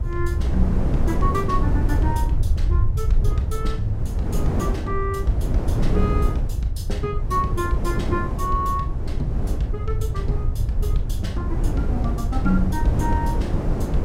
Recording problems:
rumble; below 80 Hz, SNR -1 dB
wind on the microphone; below 240 Hz, SNR 0 dB

